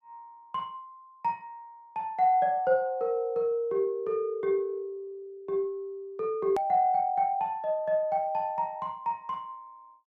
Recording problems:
hard cut with a click; at 6.5 s

